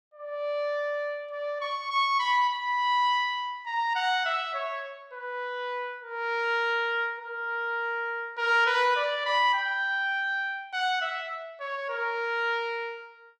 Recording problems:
none

